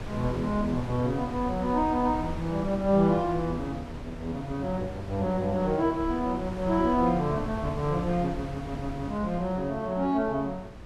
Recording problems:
wind on the microphone; below 310 Hz, SNR 11 dB

